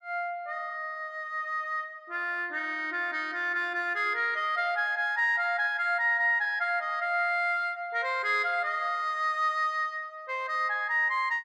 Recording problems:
none

